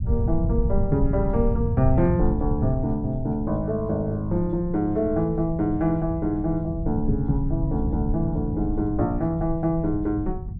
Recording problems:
rumble; below 110 Hz, SNR 5 dB

